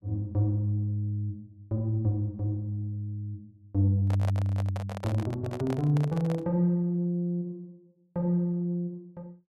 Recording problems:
handling noise; from 4 to 6.5 s; peak -5 dB vs average level

